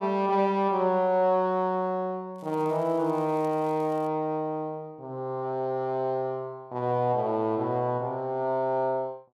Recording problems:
crackle; from 2.5 to 4 s; loose cable, SNR 29 dB

